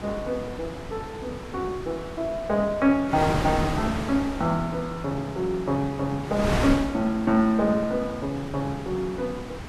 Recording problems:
wind noise; below 1 kHz, SNR 7 dB

